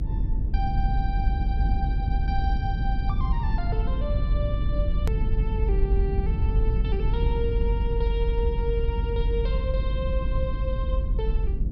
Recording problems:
low-pass filter; nothing above 5.5 kHz
low-frequency rumble; below 74 Hz, strongest tone 46 Hz, SNR -7 dB
click at an edit; at 5 s

